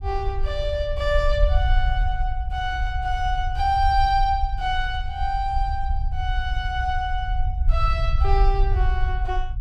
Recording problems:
low-frequency rumble; below 62 Hz, SNR 0 dB

